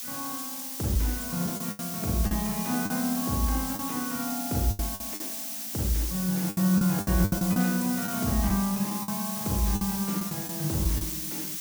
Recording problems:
hiss; slope +4 dB per octave, SNR 3 dB
lost packets; 8% of the sound replaced, filled with the last packet

